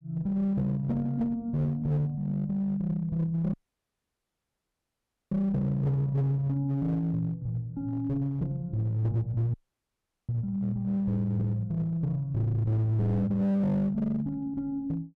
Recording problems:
distorted audio; hard clipping, uneven, signal-to-distortion ratio 11 dB
dropout; at 3.5 s for 2 s and at 9.5 s for 1 s

